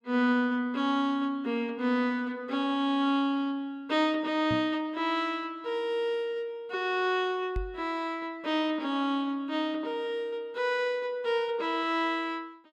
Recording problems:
microphone thump; at 4.5 s and at 7.5 s; peak -1 dB vs average level

